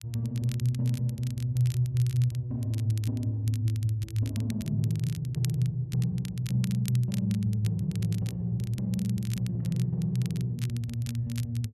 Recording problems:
crackle; vinyl, SNR 18 dB

